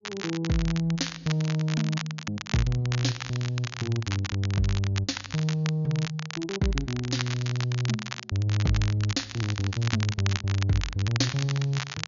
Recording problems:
treble cut off; nothing above 7 kHz
crackling; vinyl, SNR 9 dB

